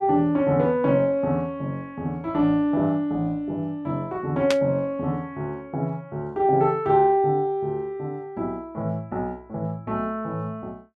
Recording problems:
static burst; at 4.5 s; peak +2 dB vs average level

